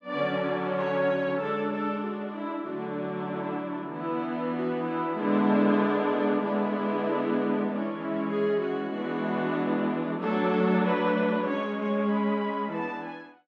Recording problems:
none

